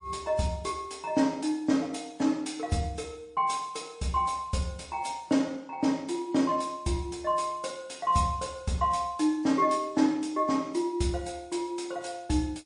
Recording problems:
codec artefacts; MP3, log-spectral distance 3 dB, nothing above 10.1 kHz

